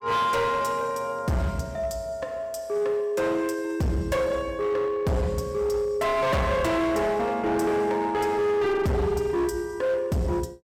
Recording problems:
distortion; hard clipping, uneven, signal-to-distortion ratio 7 dB

